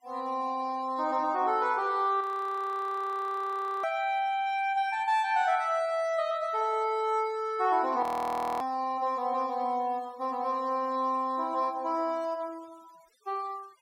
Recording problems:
denoising artefacts; signal-to-artefact ratio 27 dB
frozen audio; at 2 s for 1.5 s and at 8 s for 0.5 s

